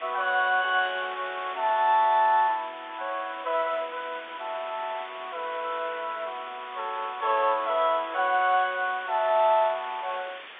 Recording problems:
phone line; 260 Hz to 3.7 kHz, G.711
background hiss; SNR 15 dB

